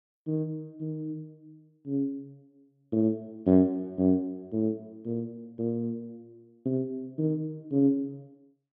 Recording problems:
none

